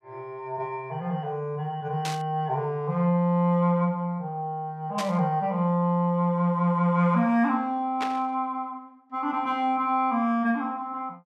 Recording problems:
static burst; at 2 s, at 5 s and at 8 s; peak -3 dB vs average level

